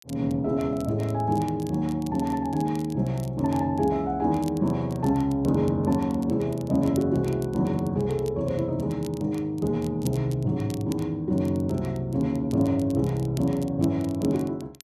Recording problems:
crackle; vinyl, SNR 23 dB

